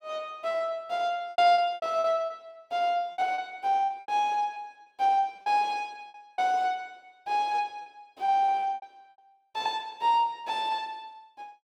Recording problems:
lost packets; 10% of the sound replaced, filled with repeated pitch periods

